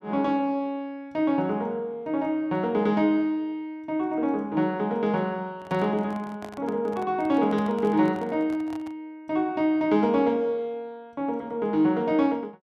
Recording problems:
microphone handling noise; from 5.5 to 9 s; peak -10 dB vs average level

